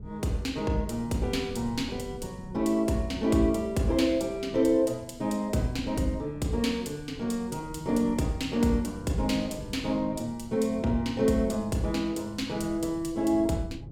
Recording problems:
wind on the microphone; below 170 Hz, SNR 17 dB

